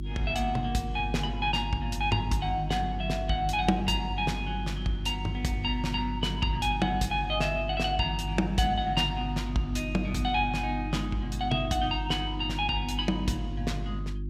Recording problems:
mains hum; 50 Hz, harmonics up to 350 Hz, SNR 6 dB

